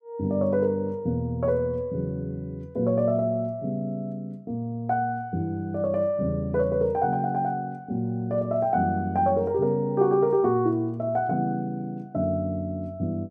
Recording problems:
none

